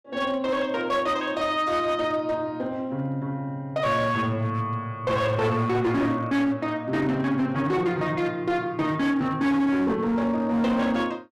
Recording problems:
distortion; hard clipping, signal-to-distortion ratio 11 dB

